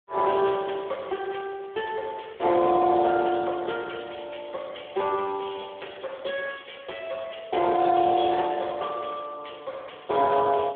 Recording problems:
phone line; 300 Hz to 3.5 kHz, Speex

